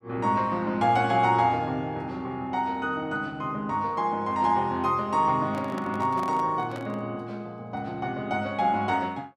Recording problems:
handling noise; from 5.5 to 7 s; peak -8 dB vs average level

